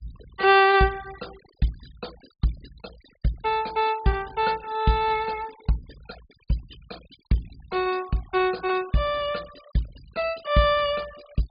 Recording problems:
treble cut off; nothing above 4.9 kHz
noise reduction artefacts; signal-to-artefact ratio 23 dB

